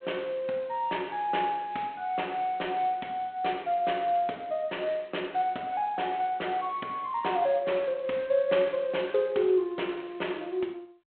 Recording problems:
telephone audio; 240 Hz to 3.4 kHz, G.726

